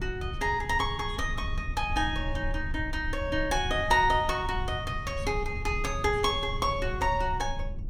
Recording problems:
low-frequency rumble; below 92 Hz, SNR 7 dB

